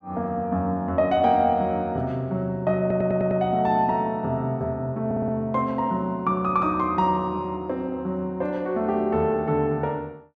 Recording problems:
stutter; at 3 s and at 5 s

